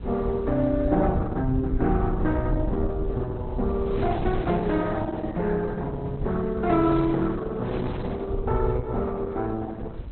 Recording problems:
lossy compression; Opus, log-spectral distance 3 dB, nothing above 4 kHz
low-frequency rumble; below 92 Hz, SNR 7 dB
wind on the microphone; below 430 Hz, SNR 13 dB

